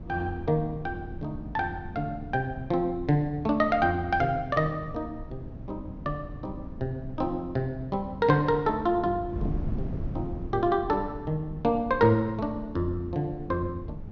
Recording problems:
low-pass filter; nothing above 6.8 kHz
wind on the microphone; below 180 Hz, SNR 12 dB

